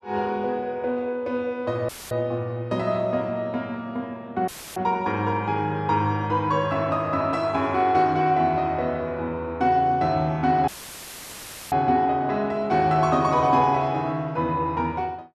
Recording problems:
audio cutting out; at 2 s, at 4.5 s and at 11 s for 1 s; filled with static

